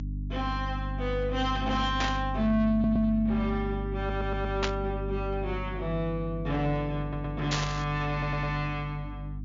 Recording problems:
treble cut off; nothing above 7.2 kHz
distorted audio; soft clipping, signal-to-distortion ratio 7 dB
electrical hum; 50 Hz, harmonics up to 300 Hz, SNR 6 dB
burst of static; at 2 s, at 4.5 s and at 7.5 s; peak +4 dB vs average level
stutter; 4 times, first at 2.5 s

